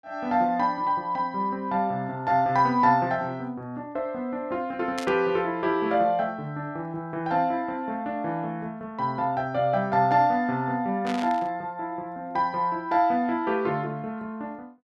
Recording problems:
static burst; at 5 s and at 11 s; peak -4 dB vs average level

